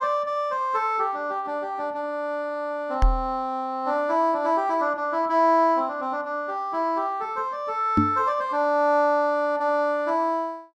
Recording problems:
knock on the microphone; at 3 s and at 8 s; peak +7 dB vs average level

